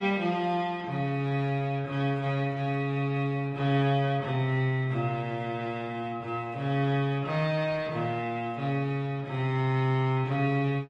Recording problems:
codec artefacts; Opus, then MP3, log-spectral distance 2 dB, nothing above 9.8 kHz

